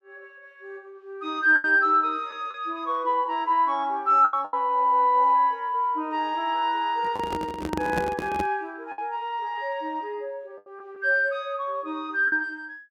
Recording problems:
packet loss; 4% of the sound replaced, filled with the last packet
microphone handling noise; from 7 to 8.5 s; peak -1 dB vs average level

